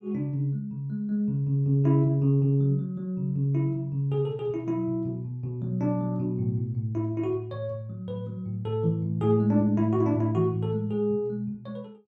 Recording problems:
none

